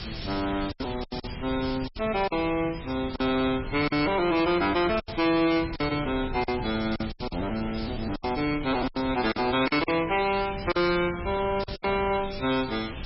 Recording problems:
lossy compression; MP3, log-spectral distance 20 dB, nothing above 5.2 kHz
distortion; hard clipping, signal-to-distortion ratio 10 dB
hiss; slope 0 dB per octave, SNR 15 dB
wind noise; below 210 Hz, SNR 14 dB
packet loss; 9% of the sound replaced, filled with silence

